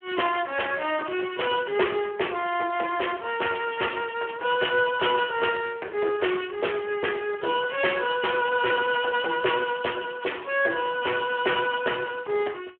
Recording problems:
telephone audio; 320 Hz to 3.2 kHz, Speex

